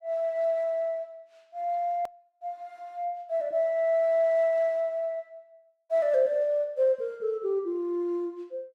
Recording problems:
edit click; at 2 s

